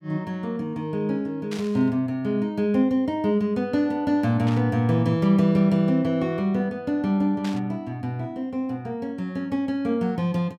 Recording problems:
burst of static; at 1.5 s, at 4.5 s and at 7.5 s; peak -9 dB vs average level

